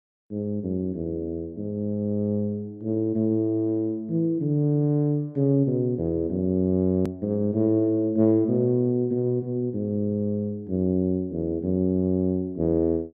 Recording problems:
edit click; at 7 s

